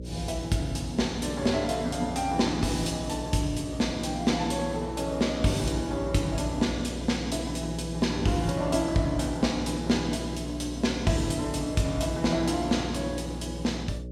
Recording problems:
hum; 60 Hz, harmonics up to 600 Hz, SNR 10 dB

